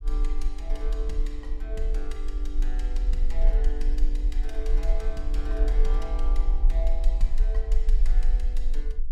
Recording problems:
rumble; below 40 Hz, strongest tone 22 Hz, SNR -11 dB

